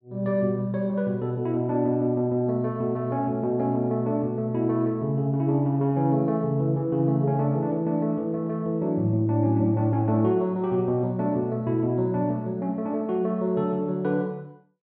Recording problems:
none

